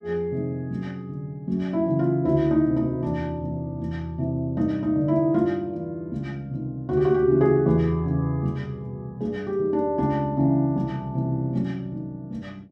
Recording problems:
none

